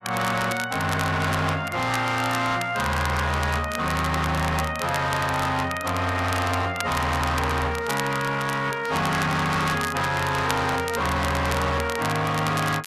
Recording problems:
distortion; hard clipping, signal-to-distortion ratio 7 dB
crackling; vinyl, SNR 12 dB

